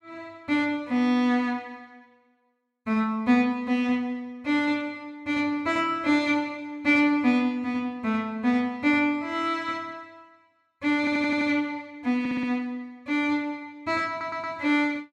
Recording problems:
stutter; at 11 s, at 12 s and at 14 s

